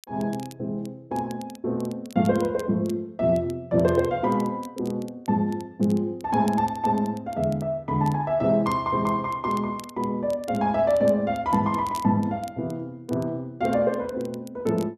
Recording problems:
crackle; vinyl, SNR 24 dB

